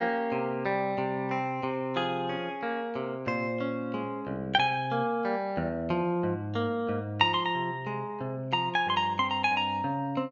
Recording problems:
treble missing; nothing above 7.1 kHz

